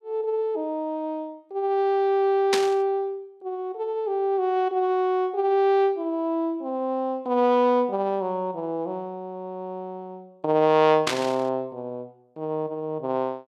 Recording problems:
burst of static; at 2.5 s and at 11 s; peak +4 dB vs average level

